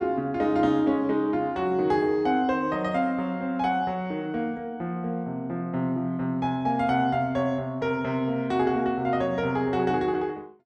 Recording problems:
none

